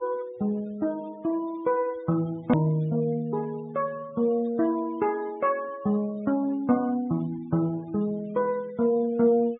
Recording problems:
low-pass filter; nothing above 4 kHz
noise reduction artefacts; signal-to-artefact ratio 24 dB
edit click; at 2.5 s

